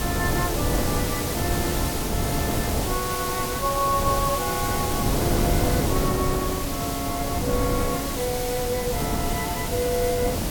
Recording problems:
hiss; slope -2 dB per octave, SNR 1 dB
wind on the microphone; below 390 Hz, SNR 0 dB

